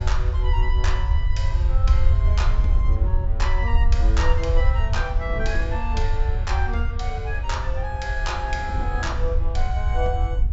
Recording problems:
treble missing; nothing above 7.6 kHz
rumble; below 70 Hz, SNR -6 dB
wind on the microphone; below 230 Hz, SNR 13 dB

